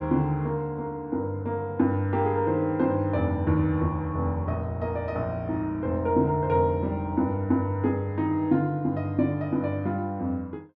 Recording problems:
none

